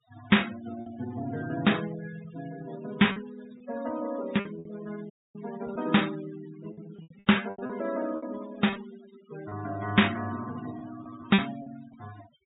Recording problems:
treble cut off; nothing above 4 kHz
noise reduction artefacts; signal-to-artefact ratio 16 dB
lost packets; 7% of the sound replaced, filled with repeated pitch periods
dropout; at 5 s

